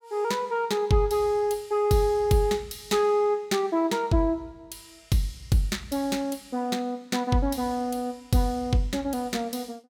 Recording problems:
none

